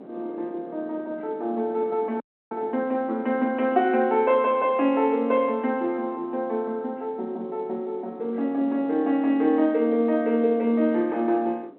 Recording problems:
phone line; 240 Hz to 3.2 kHz, G.711
wind noise; below 480 Hz, SNR 20 dB
dropout; at 2 s

